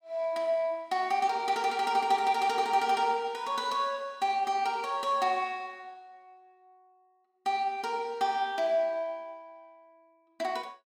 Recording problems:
none

